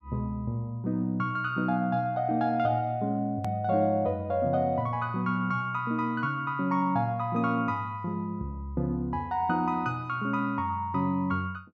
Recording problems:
click at an edit; at 3.5 s

